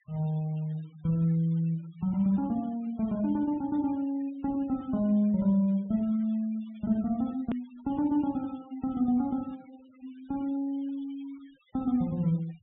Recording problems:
treble cut off; nothing above 3.7 kHz
noise reduction artefacts; signal-to-artefact ratio 27 dB
hard cut with a click; at 7.5 s

